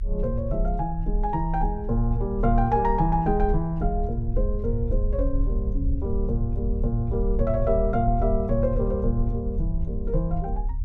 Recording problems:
rumble; below 60 Hz, strongest tone 36 Hz, SNR 3 dB

